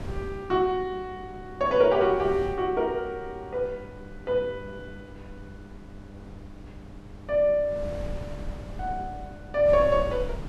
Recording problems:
hum; 50 Hz, harmonics up to 1.1 kHz, SNR 23 dB
wind noise; below 170 Hz, SNR 16 dB

